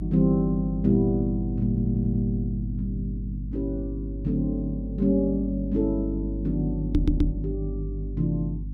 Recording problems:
hum; 50 Hz, harmonics up to 300 Hz, SNR 6 dB
audio stuttering; at 1.5 s and at 7 s
microphone thump; at 7 s; peak +6 dB vs average level

